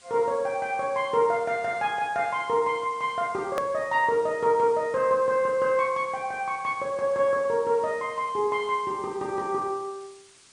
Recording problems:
lossy codec; MP3, log-spectral distance 3 dB, nothing above 17.1 kHz
background hiss; SNR 26 dB
click at an edit; at 3.5 s

